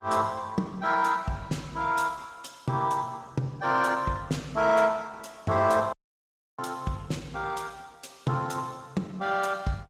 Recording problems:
lossy codec; Opus, log-spectral distance 4 dB, nothing above 18.3 kHz
audio cutting out; at 6 s for 0.5 s

